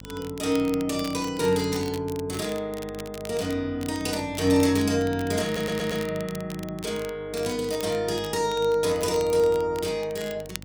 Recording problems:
electrical hum; 50 Hz, harmonics up to 800 Hz, SNR 20 dB
crackling; vinyl, SNR 17 dB
stutter; at 5.5 s

